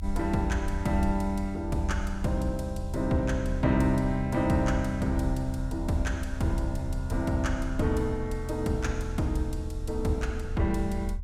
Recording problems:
low-frequency rumble; below 80 Hz, strongest tone 36 Hz, SNR 7 dB

